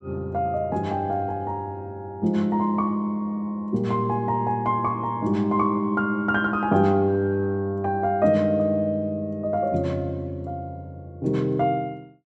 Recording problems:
none

